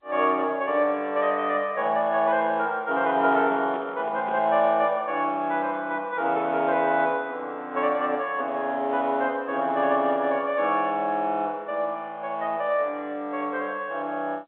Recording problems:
telephone audio; 220 Hz to 3.6 kHz, G.711
handling noise; from 3 to 4.5 s; peak -11 dB vs average level

